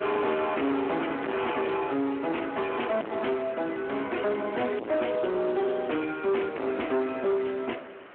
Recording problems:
telephone audio; 240 Hz to 3.1 kHz, Speex
distorted audio; hard clipping, uneven, signal-to-distortion ratio 5 dB
hiss; SNR 19 dB

